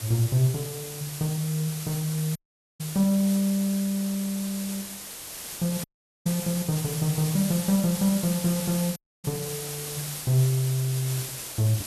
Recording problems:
hiss; slope -1 dB per octave, SNR 7 dB
audio cutting out; at 2.5 s, at 6 s and at 9 s

